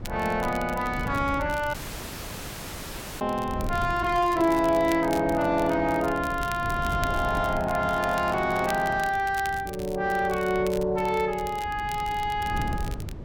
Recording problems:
distorted audio; soft clipping, signal-to-distortion ratio 11 dB
wind noise; below 190 Hz, SNR 11 dB
crackling; vinyl, SNR 18 dB
dropout; at 1.5 s for 1.5 s

